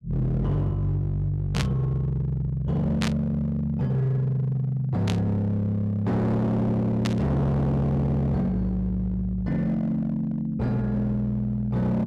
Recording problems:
distorted audio; hard clipping, signal-to-distortion ratio 7 dB
burst of static; 4 times, first at 1.5 s; peak -1 dB vs average level

